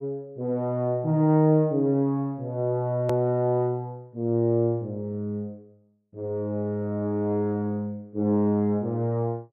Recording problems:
click at an edit; at 3 s

